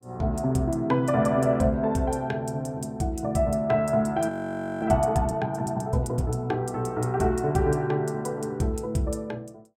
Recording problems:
frozen audio; at 4.5 s for 0.5 s

